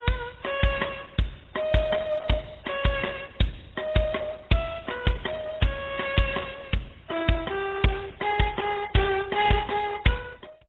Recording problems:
codec artefacts; AAC, then Opus, log-spectral distance 6 dB, nothing above 3.8 kHz

